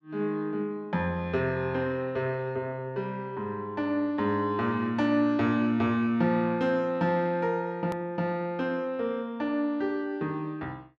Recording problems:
edit click; at 8 s

